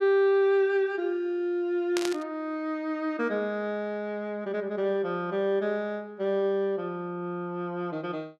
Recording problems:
burst of static; at 2 s; peak 0 dB vs average level

